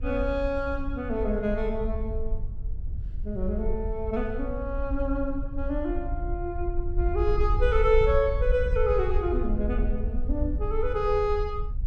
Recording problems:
wind noise; below 60 Hz, SNR 3 dB

